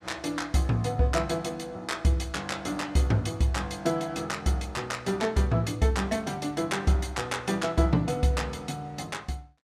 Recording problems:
none

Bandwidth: 14 kHz